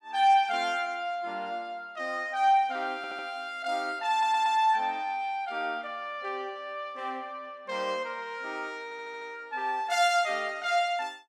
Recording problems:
audio stuttering; at 3 s, at 4 s and at 9 s

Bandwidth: 17 kHz